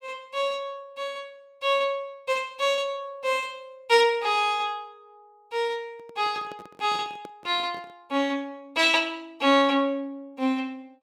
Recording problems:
microphone handling noise; from 6 to 8 s; peak -13 dB vs average level

